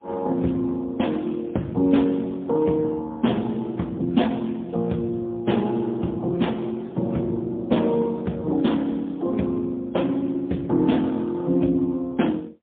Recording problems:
phone line; 110 Hz to 3.5 kHz, AMR-NB, then MP3

